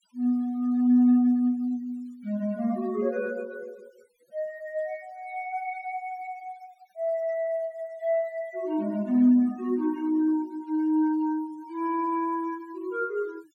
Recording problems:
noise reduction artefacts; signal-to-artefact ratio 28 dB

